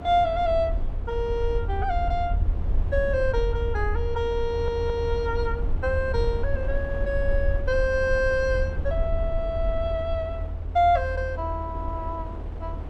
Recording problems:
low-frequency rumble; below 78 Hz, SNR 4 dB
wind on the microphone; below 490 Hz, SNR 13 dB
audio stuttering; at 4.5 s

